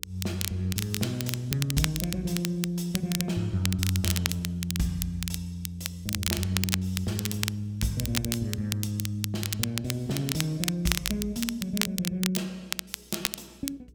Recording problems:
hum; 60 Hz, harmonics up to 480 Hz, SNR 27 dB
crackling; vinyl, SNR 2 dB

